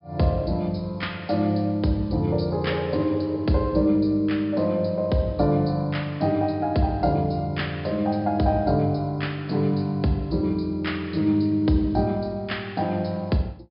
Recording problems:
low-pass filter; nothing above 5.5 kHz

